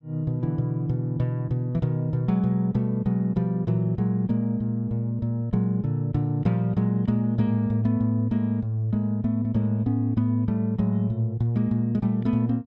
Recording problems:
none

